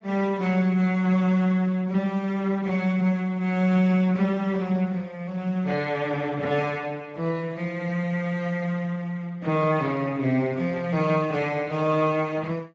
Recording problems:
lossy codec; Speex, log-spectral distance 3 dB

